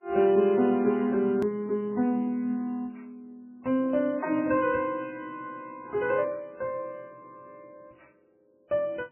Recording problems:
lossy compression; MP3, log-spectral distance 2 dB, nothing above 2.5 kHz
edit click; at 1.5 s

